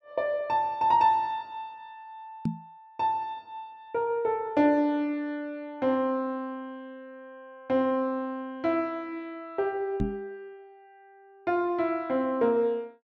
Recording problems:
microphone thump; at 2.5 s and at 10 s; peak +3 dB vs average level

